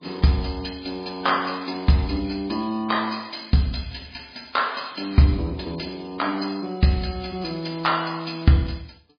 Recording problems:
lossy codec; MP3, log-spectral distance 7 dB, nothing above 11 kHz

